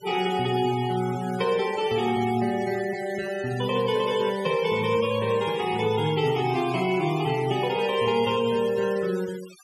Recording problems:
denoising artefacts; signal-to-artefact ratio 17 dB

